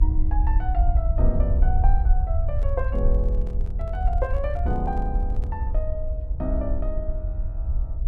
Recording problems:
electrical hum; 60 Hz, harmonics up to 720 Hz, SNR 23 dB
rumble; below 62 Hz, SNR -6 dB
handling noise; from 2.5 to 5.5 s; peak -9 dB vs average level

